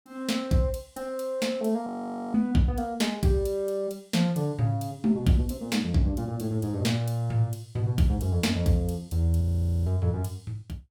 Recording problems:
audio freezing; at 2 s and at 9.5 s

